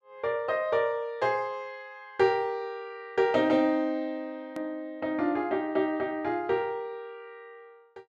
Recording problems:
hard cut with a click; at 4.5 s

